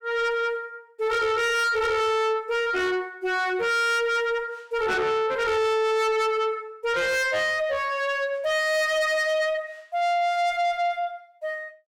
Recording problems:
distorted audio; soft clipping, signal-to-distortion ratio 6 dB

